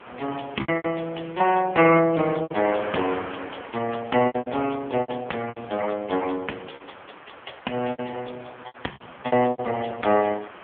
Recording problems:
telephone audio; 240 Hz to 3.3 kHz, AMR-NB
wind noise; below 1.9 kHz, SNR 17 dB
lost packets; 12% of the sound replaced, filled with repeated pitch periods

